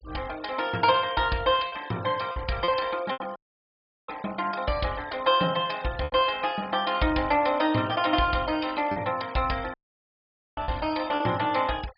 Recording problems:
low-pass filter; nothing above 5.5 kHz
noise reduction artefacts; signal-to-artefact ratio 20 dB
packet loss; 4% of the sound replaced, filled with repeated pitch periods
dropout; at 3.5 s for 0.5 s and at 9.5 s for 1 s

